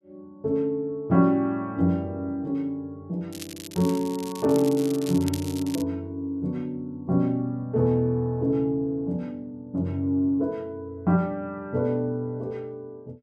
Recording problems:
crackling; from 3.5 to 6 s; loose cable, SNR 14 dB

